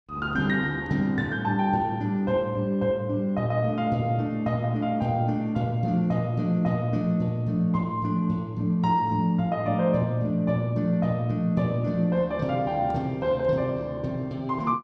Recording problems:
none

